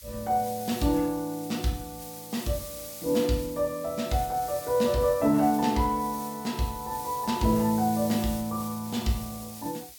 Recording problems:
background hiss; SNR 13 dB

